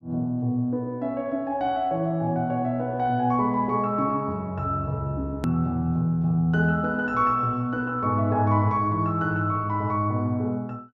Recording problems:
click at an edit; at 5.5 s

